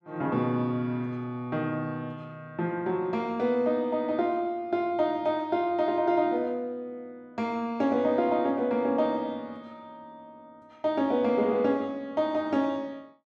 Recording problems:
none

